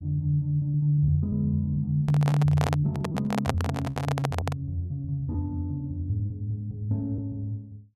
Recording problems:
packet loss; 7% of the sound replaced, filled with repeated pitch periods
microphone handling noise; from 2 to 4.5 s; peak +4 dB vs average level

